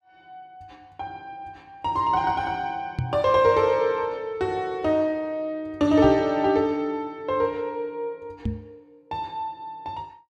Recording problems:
microphone bump; at 3 s, at 6 s and at 8.5 s; peak 0 dB vs average level

